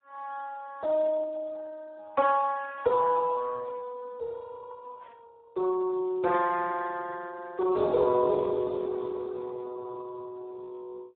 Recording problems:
telephone audio; 320 Hz to 2.8 kHz, Speex

